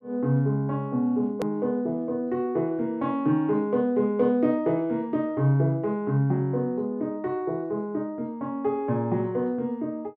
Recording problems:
click at an edit; at 1.5 s

